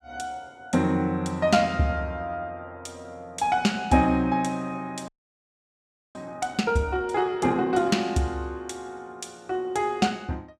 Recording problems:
frozen audio; at 5 s for 1 s

